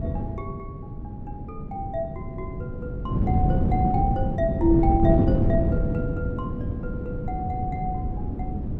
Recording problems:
electrical hum; 50 Hz, harmonics up to 600 Hz, SNR 18 dB
wind on the microphone; below 220 Hz, SNR -2 dB

